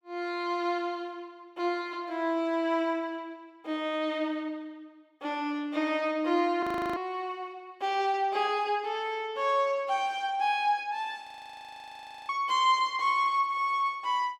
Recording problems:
frozen audio; at 6.5 s and at 11 s for 1 s

